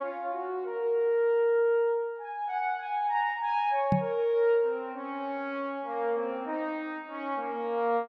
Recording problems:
microphone thump; at 4 s; peak +6 dB vs average level

